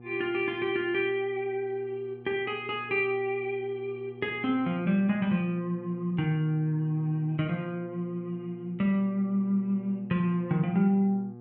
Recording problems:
electrical hum; 60 Hz, harmonics up to 840 Hz, SNR 19 dB

